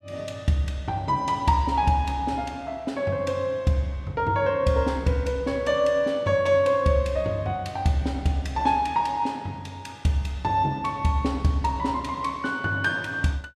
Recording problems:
none

